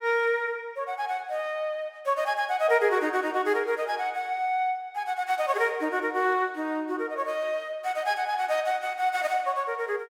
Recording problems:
none

